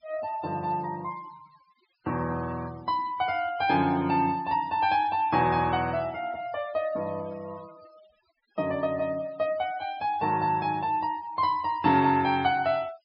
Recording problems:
low-pass filter; nothing above 5.5 kHz
denoising artefacts; signal-to-artefact ratio 22 dB

